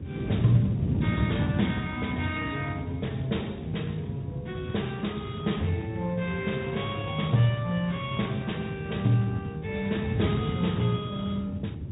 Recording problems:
treble cut off; nothing above 3.8 kHz
lossy codec; Speex, then MP2, log-spectral distance 4 dB
electrical hum; 60 Hz, harmonics up to 840 Hz, SNR 27 dB
wind noise; below 230 Hz, SNR 4 dB

